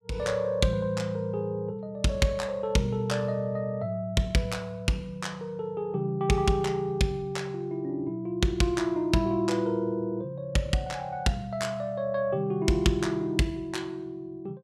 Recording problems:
none

